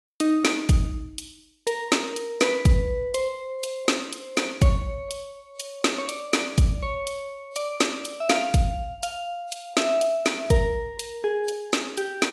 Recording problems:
lossy codec; AAC, log-spectral distance 3 dB, nothing above 11.6 kHz

